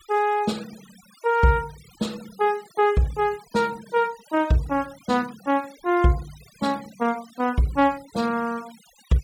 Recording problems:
noise reduction artefacts; signal-to-artefact ratio 22 dB

